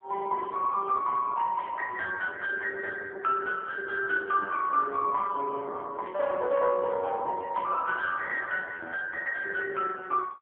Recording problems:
telephone audio; 320 Hz to 3 kHz, AMR-NB
burst of static; at 1.5 s, at 6 s and at 7.5 s; peak -14 dB vs average level

